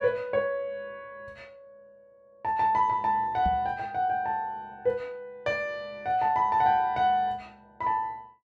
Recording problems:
microphone bump; at 3.5 s; peak -2 dB vs average level

